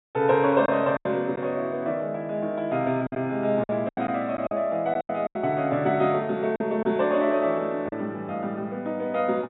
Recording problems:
treble cut off; nothing above 3.8 kHz
packet loss; 7% of the sound replaced, filled with silence

